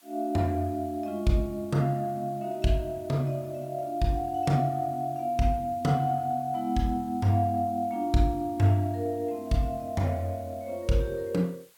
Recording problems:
background hiss; slope 0 dB per octave, SNR 28 dB

